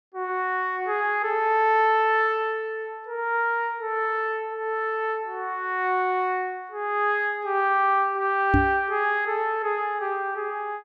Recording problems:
microphone bump; at 8.5 s; peak +6 dB vs average level

